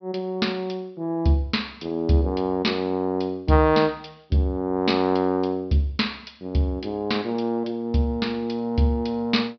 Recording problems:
low-pass filter; nothing above 5.5 kHz

